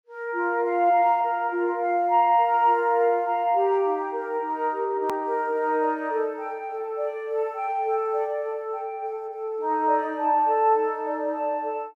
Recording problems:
hard cut with a click; at 5 s

